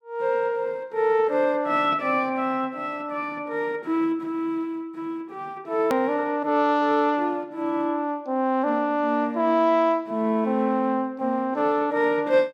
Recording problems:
hard cut with a click; at 6 s

